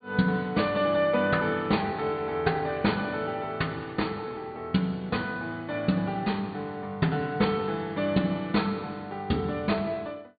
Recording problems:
low-pass filter; nothing above 4.6 kHz

